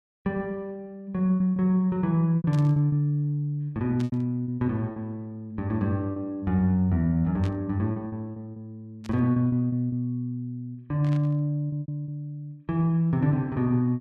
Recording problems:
packet loss; 7% of the sound replaced, filled with repeated pitch periods
burst of static; 5 times, first at 2.5 s; peak -13 dB vs average level

